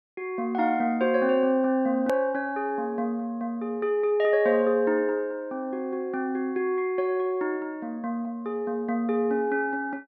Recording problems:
low-pass filter; nothing above 5.5 kHz
edit click; at 2 s

